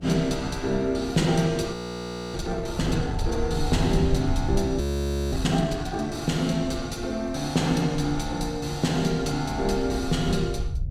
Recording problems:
hum; 60 Hz, harmonics up to 720 Hz, SNR 21 dB
low-frequency rumble; below 94 Hz, SNR 8 dB
audio freezing; at 1.5 s for 0.5 s and at 5 s for 0.5 s

